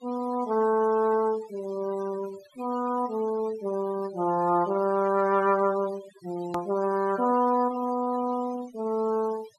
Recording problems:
denoising artefacts; signal-to-artefact ratio 21 dB
edit click; at 6.5 s

